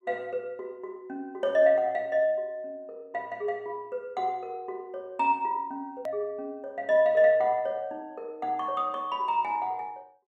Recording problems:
hard cut with a click; at 6 s

